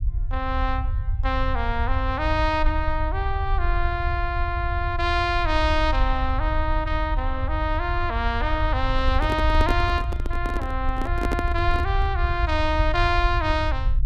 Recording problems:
low-frequency rumble; below 72 Hz, SNR 2 dB
microphone handling noise; from 9 to 12 s; peak +2 dB vs average level

